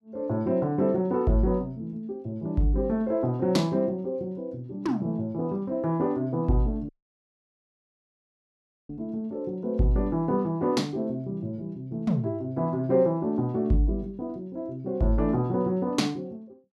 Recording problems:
dropout; at 7 s for 2 s

